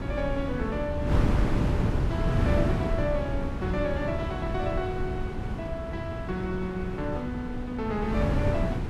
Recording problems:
wind on the microphone; below 240 Hz, SNR -3 dB

